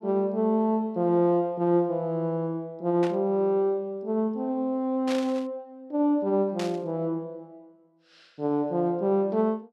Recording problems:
static burst; at 3 s, at 5 s and at 6.5 s; peak -5 dB vs average level

